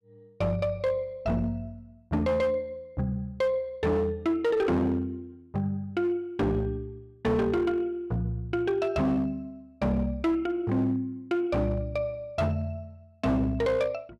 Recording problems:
distorted audio; hard clipping, uneven, signal-to-distortion ratio 11 dB

